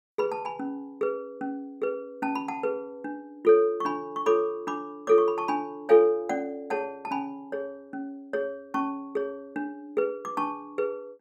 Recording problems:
none

